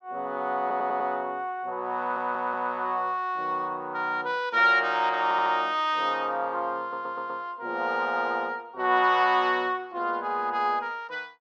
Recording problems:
stutter; 4 times, first at 0.5 s

